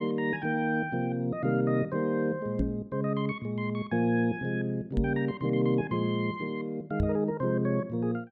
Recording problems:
knock on the microphone; at 2.5 s, at 5 s and at 7 s; peak +4 dB vs average level

